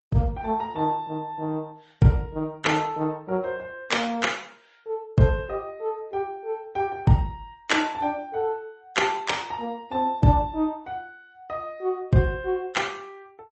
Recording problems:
lossy compression; Opus, then MP3, log-spectral distance 2 dB, nothing above 7.8 kHz

